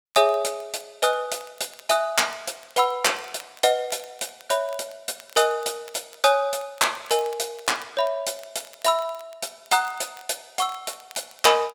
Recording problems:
crackle; vinyl, SNR 25 dB

